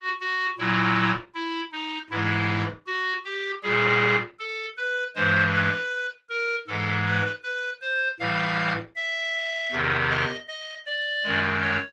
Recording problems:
codec artefacts; Opus, log-spectral distance 4 dB

